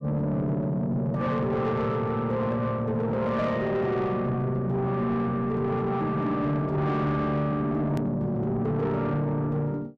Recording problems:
distorted audio; soft clipping, signal-to-distortion ratio 11 dB
edit click; at 8 s

